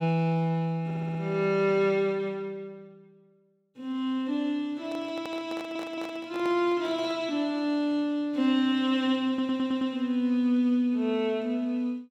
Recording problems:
stutter; at 1 s, at 5.5 s and at 9.5 s
handling noise; from 4.5 to 7 s; peak -8 dB vs average level

